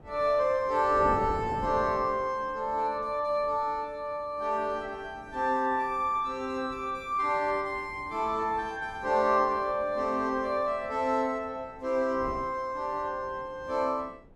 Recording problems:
wind noise; below 490 Hz, SNR 18 dB

